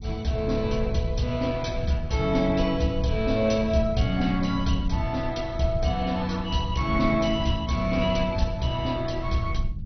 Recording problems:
lossy compression; MP2, log-spectral distance 3 dB, nothing above 6 kHz
low-frequency rumble; below 110 Hz, SNR 8 dB

